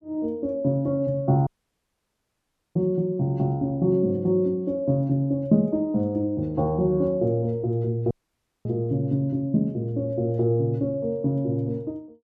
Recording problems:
audio cutting out; at 1.5 s for 1.5 s and at 8 s for 0.5 s

